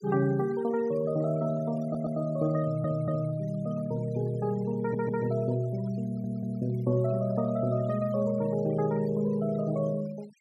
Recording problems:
noise reduction artefacts; signal-to-artefact ratio 22 dB
stutter; 4 times, first at 2 s

